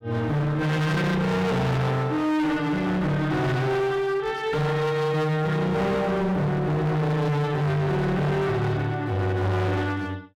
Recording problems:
distortion; hard clipping, uneven, signal-to-distortion ratio 6 dB

